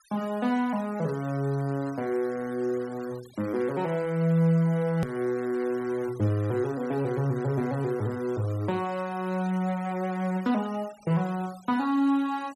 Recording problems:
denoising artefacts; signal-to-artefact ratio 21 dB
click at an edit; at 5 s

